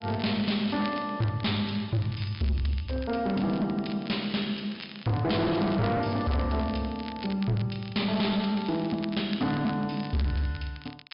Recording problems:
treble cut off; nothing above 5.5 kHz
distortion; hard clipping, signal-to-distortion ratio 7 dB
crackle; vinyl, SNR 17 dB

